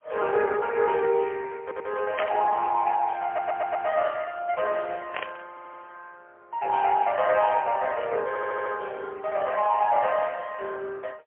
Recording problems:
phone line; 340 Hz to 3.1 kHz, AMR-NB, then MP3
audio stuttering; 4 times, first at 1.5 s
burst of static; at 2 s and at 5 s; peak +1 dB vs average level

